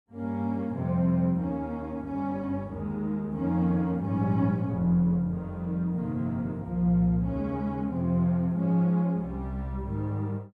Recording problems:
none

